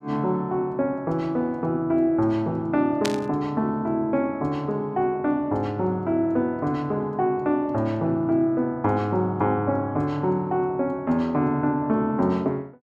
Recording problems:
burst of static; at 3 s; peak +1 dB vs average level

